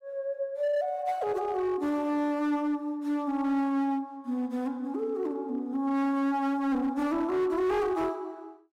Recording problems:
distorted audio; hard clipping, signal-to-distortion ratio 12 dB

